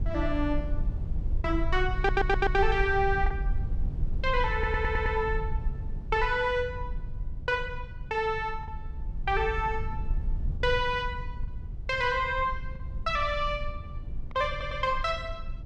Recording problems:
low-frequency rumble; below 66 Hz, SNR 6 dB
packet loss; 1.6% of the sound replaced, filled with the last packet
audio stuttering; at 2 s, at 4.5 s and at 15 s

